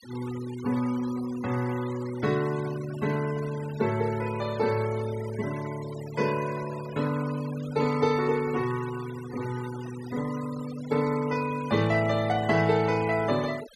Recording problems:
noise reduction artefacts; signal-to-artefact ratio 16 dB

